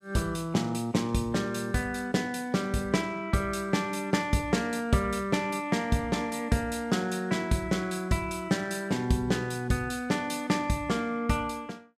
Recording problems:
none

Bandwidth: 15 kHz